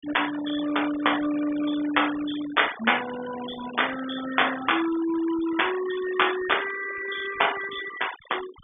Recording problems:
treble missing; nothing above 3.6 kHz
noise reduction artefacts; signal-to-artefact ratio 12 dB

